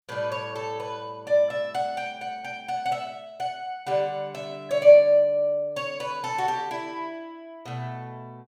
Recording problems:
none

